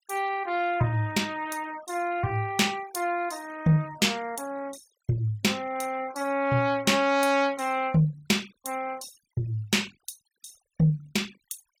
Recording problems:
denoising artefacts; signal-to-artefact ratio 22 dB

